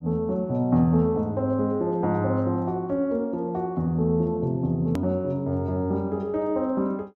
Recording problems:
click at an edit; at 5 s

